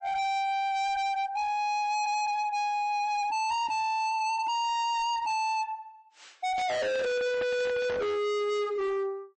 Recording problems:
lossy codec; MP3, log-spectral distance 2 dB, nothing above 8 kHz
distortion; hard clipping, signal-to-distortion ratio 6 dB
handling noise; from 6.5 to 8 s; peak -2 dB vs average level

